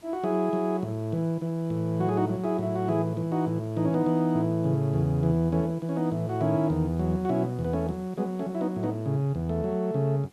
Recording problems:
hiss; SNR 29 dB

